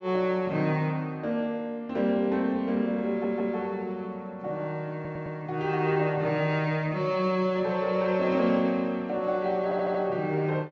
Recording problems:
treble missing; nothing above 8 kHz
stutter; at 3 s, at 5 s and at 9.5 s

